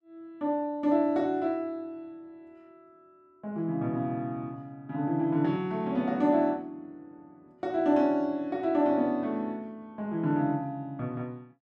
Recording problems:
none

